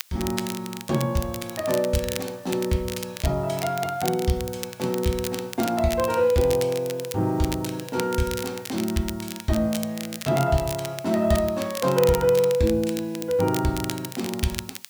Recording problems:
background hiss; slope +3 dB per octave, SNR 25 dB
crackle; vinyl, SNR 11 dB

